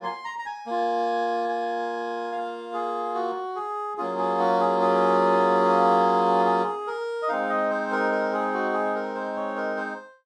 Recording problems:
none

